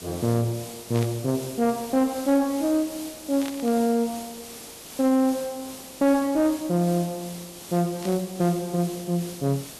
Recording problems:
distorted audio; soft clipping, signal-to-distortion ratio 11 dB
background hiss; SNR 14 dB
burst of static; at 1 s, at 3.5 s and at 8 s; peak -9 dB vs average level

